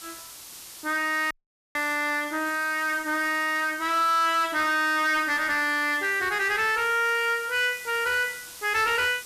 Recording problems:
distortion; soft clipping, signal-to-distortion ratio 9 dB
hiss; SNR 17 dB
audio cutting out; at 1.5 s

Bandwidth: 14.5 kHz